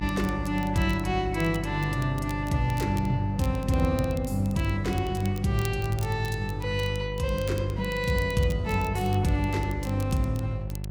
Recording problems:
electrical hum; 50 Hz, harmonics up to 600 Hz, SNR 7 dB
crackle; vinyl, SNR 19 dB

